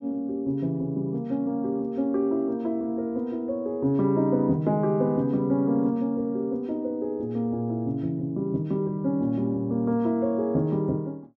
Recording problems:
none

